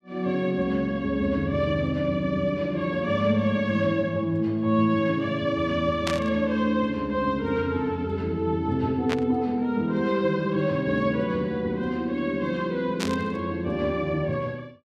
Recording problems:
static burst; at 6 s, at 9 s and at 13 s; peak 0 dB vs average level

